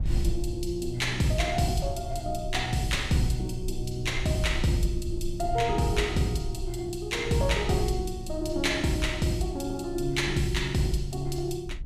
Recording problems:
low-frequency rumble; below 60 Hz, strongest tone 22 Hz, SNR 10 dB

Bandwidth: 15 kHz